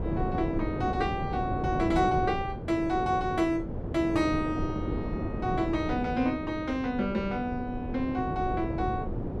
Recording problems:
wind noise; below 380 Hz, SNR 4 dB

